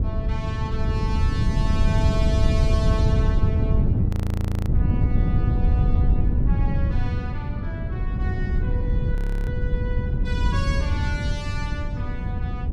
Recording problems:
wind on the microphone; below 120 Hz, SNR -10 dB
audio freezing; at 4 s for 0.5 s and at 9 s

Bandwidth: 15.5 kHz